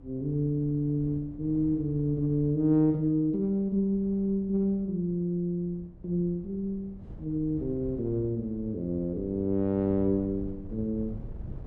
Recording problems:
wind on the microphone; below 150 Hz, SNR 17 dB

